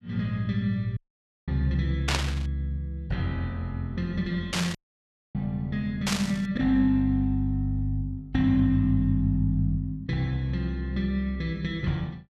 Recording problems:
dropout; at 1 s for 0.5 s and at 5 s for 0.5 s
burst of static; at 2 s, at 4.5 s and at 6 s; peak +4 dB vs average level

